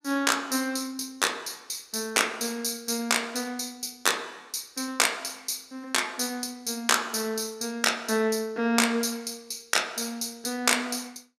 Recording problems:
none

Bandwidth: 15.5 kHz